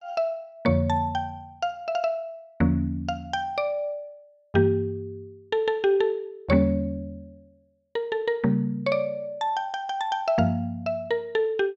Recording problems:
none

